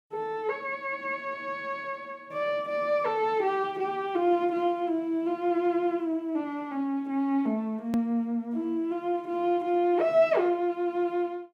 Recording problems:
edit click; at 8 s

